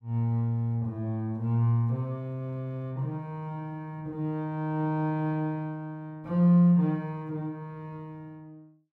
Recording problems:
none

